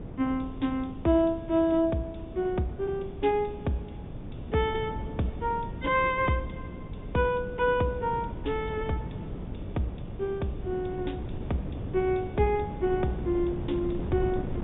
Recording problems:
treble missing; nothing above 3.7 kHz
electrical hum; 60 Hz, harmonics up to 480 Hz, SNR 21 dB
wind noise; below 250 Hz, SNR 10 dB

